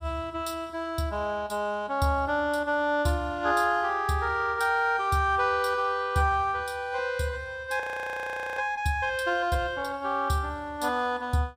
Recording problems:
audio freezing; at 8 s for 1 s

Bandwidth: 15.5 kHz